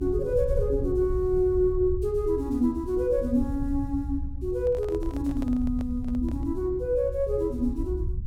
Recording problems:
low-frequency rumble; below 80 Hz, SNR 8 dB
handling noise; from 4.5 to 6.5 s; peak -11 dB vs average level

